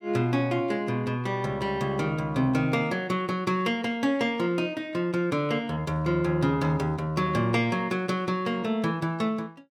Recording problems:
none

